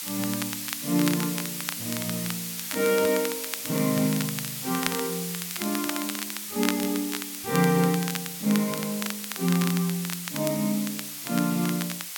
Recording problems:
hiss; slope +4 dB per octave, SNR 5 dB
crackle; vinyl, SNR 8 dB

